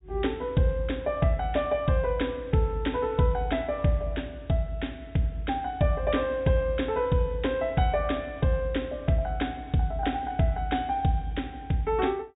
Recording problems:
treble missing; nothing above 4 kHz

